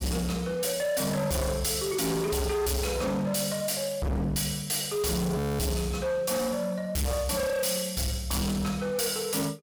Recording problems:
distortion; hard clipping, signal-to-distortion ratio 6 dB
frozen audio; at 5.5 s

